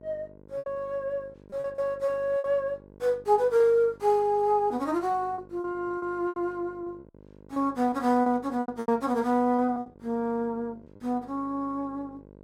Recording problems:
mains hum; 50 Hz, harmonics up to 1.1 kHz, SNR 24 dB
packet loss; 9% of the sound replaced, filled with repeated pitch periods

